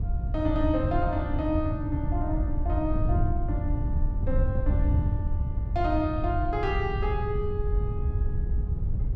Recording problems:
wind noise; below 98 Hz, SNR -2 dB

